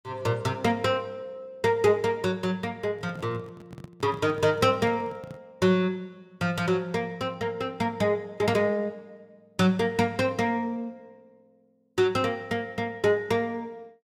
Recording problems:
handling noise; from 3 to 5.5 s; peak -8 dB vs average level

